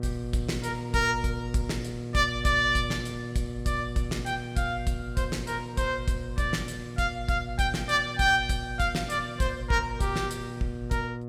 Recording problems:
mains hum; 60 Hz, harmonics up to 720 Hz, SNR 9 dB

